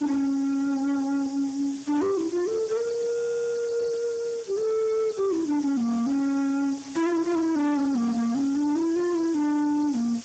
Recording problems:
codec artefacts; Speex, log-spectral distance 5 dB, nothing above 7.6 kHz
distortion; hard clipping, signal-to-distortion ratio 7 dB
hiss; slope +1 dB per octave, SNR 19 dB
static burst; at 2 s; peak -19 dB vs average level
audio stuttering; at 3 s

